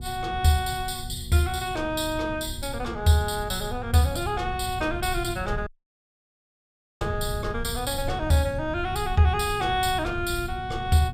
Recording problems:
electrical hum; 60 Hz, harmonics up to 840 Hz, SNR 19 dB
rumble; below 110 Hz, SNR 10 dB
dropout; at 5.5 s for 1.5 s

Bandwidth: 15.5 kHz